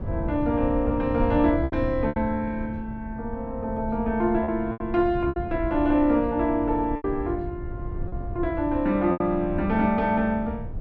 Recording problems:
wind noise; below 120 Hz, SNR 10 dB
lost packets; 5% of the sound replaced, filled with repeated pitch periods

